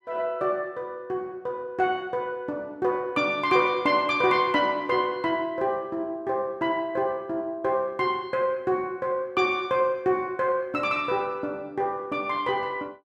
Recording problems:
none

